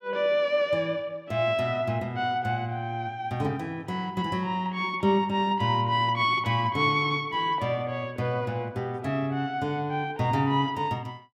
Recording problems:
none

